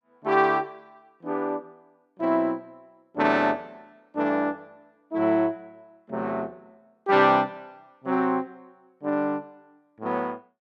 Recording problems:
none

